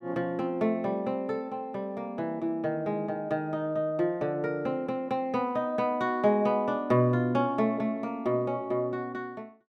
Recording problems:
none

